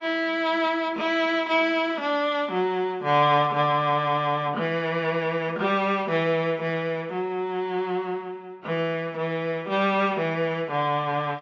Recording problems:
lossy compression; AAC, log-spectral distance 2 dB

